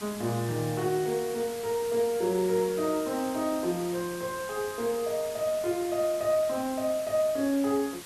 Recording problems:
background hiss; slope -1 dB per octave, SNR 13 dB

